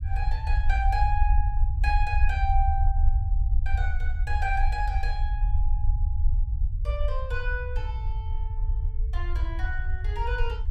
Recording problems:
low-frequency rumble; below 66 Hz, SNR -5 dB

